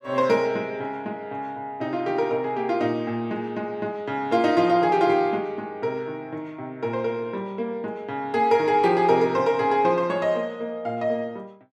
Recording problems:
none

